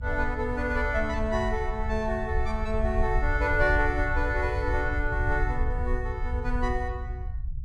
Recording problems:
rumble; below 70 Hz, SNR 3 dB

